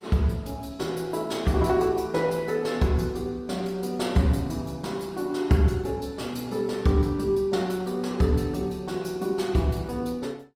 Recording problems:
lossy codec; Opus, log-spectral distance 3 dB

